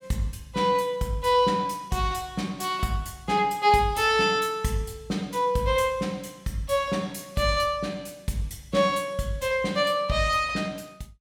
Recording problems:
none

